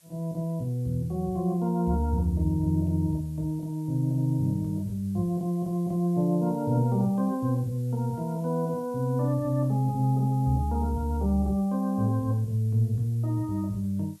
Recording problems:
background hiss; slope +1 dB per octave, SNR 29 dB

